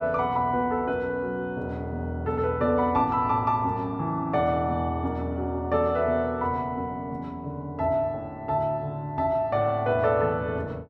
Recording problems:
none

